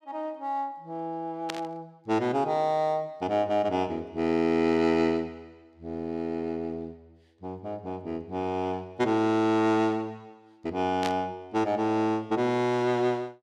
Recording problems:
burst of static; at 1.5 s and at 11 s; peak -2 dB vs average level

